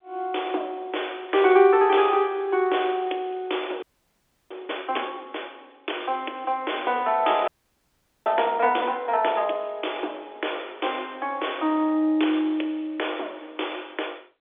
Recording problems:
phone line; 280 Hz to 3.5 kHz, G.711
audio freezing; at 4 s for 0.5 s and at 7.5 s for 1 s

